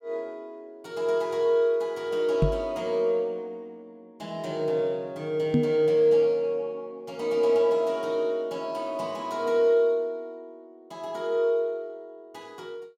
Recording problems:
microphone thump; at 2.5 s and at 5.5 s; peak +6 dB vs average level

